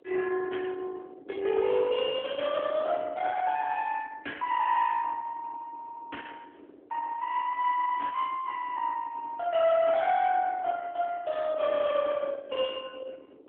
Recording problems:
telephone audio; 260 Hz to 3.4 kHz, AMR-NB
distorted audio; soft clipping, signal-to-distortion ratio 14 dB
wind on the microphone; below 990 Hz, SNR 13 dB

